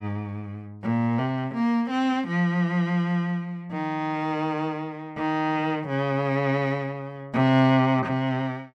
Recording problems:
none

